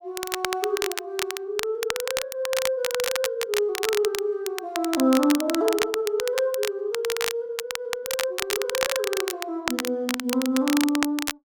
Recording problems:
crackle; vinyl, SNR 4 dB

